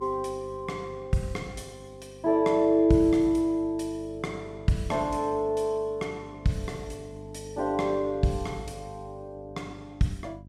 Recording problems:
hum; 50 Hz, harmonics up to 400 Hz, SNR 20 dB

